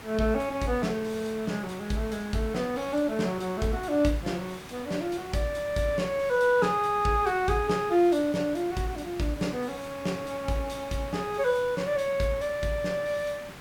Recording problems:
hiss; SNR 16 dB

